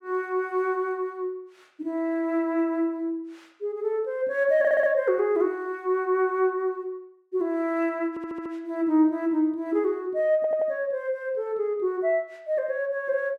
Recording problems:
stutter; at 4.5 s, at 8 s and at 10 s

